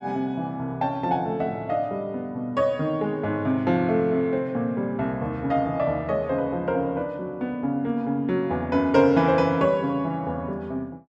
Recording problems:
none

